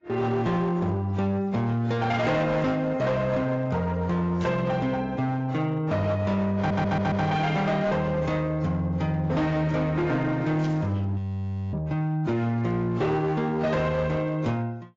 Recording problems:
lossy compression; AAC, log-spectral distance 2 dB
distorted audio; hard clipping, signal-to-distortion ratio 11 dB
static burst; at 4.5 s and at 11 s; peak -14 dB vs average level
stutter; at 6.5 s
frozen audio; at 11 s for 0.5 s

